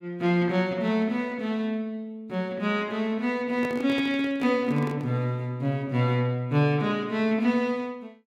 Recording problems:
handling noise; from 3.5 to 5 s; peak -6 dB vs average level

